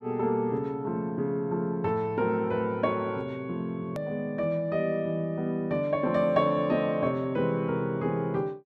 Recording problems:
hard cut with a click; at 4 s

